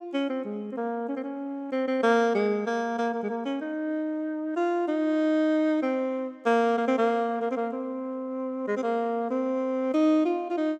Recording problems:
none

